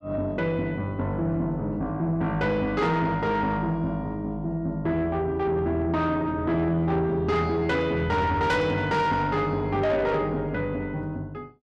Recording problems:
distorted audio; soft clipping, signal-to-distortion ratio 12 dB

